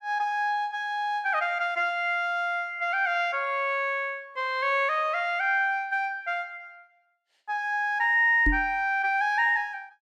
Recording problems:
knock on the microphone; at 8.5 s; peak +2 dB vs average level

